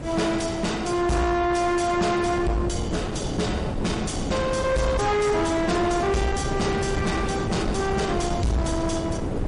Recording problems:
codec artefacts; MP3, log-spectral distance 4 dB, nothing above 10.4 kHz
distortion; soft clipping, signal-to-distortion ratio 7 dB
background hiss; SNR 24 dB
wind on the microphone; below 430 Hz, SNR 5 dB

